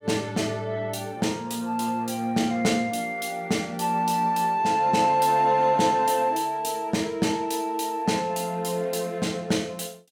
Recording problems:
none

